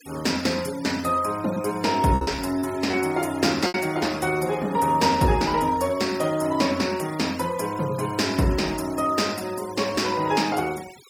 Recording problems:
noise reduction artefacts; signal-to-artefact ratio 17 dB
packet loss; 3% of the sound replaced, filled with repeated pitch periods

